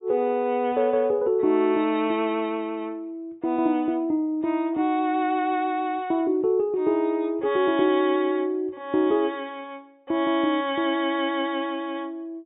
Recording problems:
treble missing; nothing above 4 kHz

